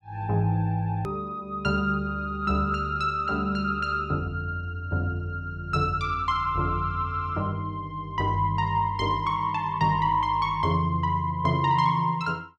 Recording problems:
click at an edit; at 1 s

